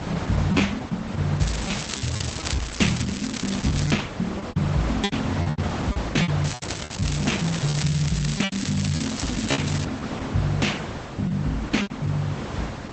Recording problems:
codec artefacts; Opus, log-spectral distance 8 dB, nothing above 7.6 kHz
wind on the microphone; below 1.2 kHz, SNR 7 dB
lost packets; 9% of the sound replaced, filled with repeated pitch periods
crackling; from 1.5 to 4 s and from 6.5 to 10 s; loose cable, SNR 7 dB

